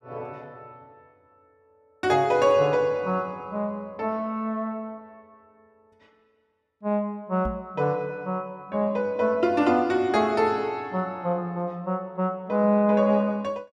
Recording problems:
microphone thump; at 7.5 s; peak -4 dB vs average level

